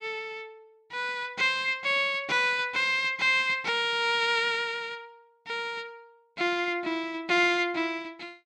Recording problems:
none

